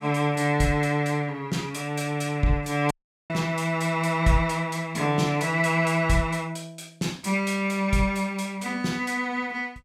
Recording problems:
dropout; at 3 s

